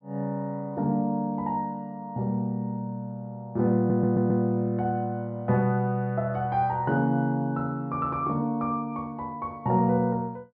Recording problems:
treble cut off; nothing above 5.5 kHz
audio stuttering; at 4 s

